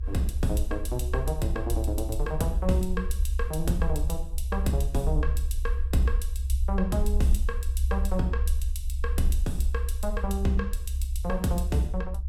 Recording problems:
rumble; below 66 Hz, SNR -1 dB

